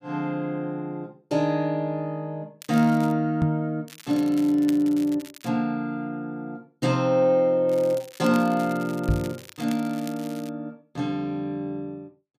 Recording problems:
crackling; at 2.5 s, from 4 to 5.5 s and from 7.5 to 11 s; loose cable, SNR 20 dB
microphone bump; at 3.5 s and at 9 s; peak +6 dB vs average level

